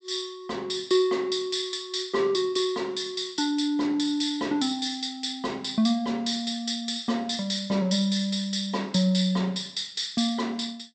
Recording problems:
treble missing; nothing above 8 kHz

